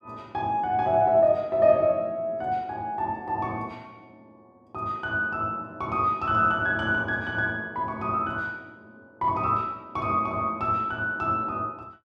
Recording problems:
none

